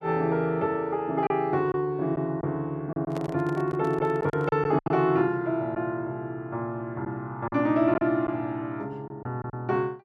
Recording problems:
lost packets; 5% of the sound replaced, filled with silence
handling noise; from 3 to 4.5 s; peak -5 dB vs average level

